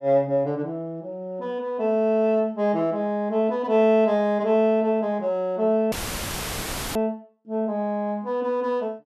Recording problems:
audio cutting out; at 6 s for 1 s; filled with static

